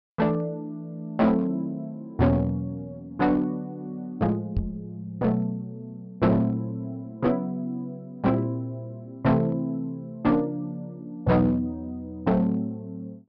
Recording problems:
treble cut off; nothing above 5.5 kHz
distorted audio; hard clipping, uneven, signal-to-distortion ratio 10 dB
microphone bump; at 4.5 s; peak +3 dB vs average level

